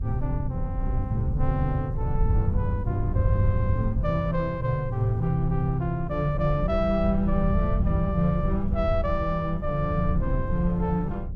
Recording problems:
hum; 60 Hz, harmonics up to 600 Hz, SNR 24 dB
wind noise; below 94 Hz, SNR 3 dB

